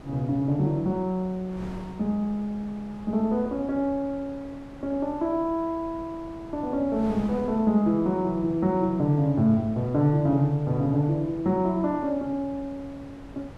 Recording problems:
wind noise; below 590 Hz, SNR 18 dB

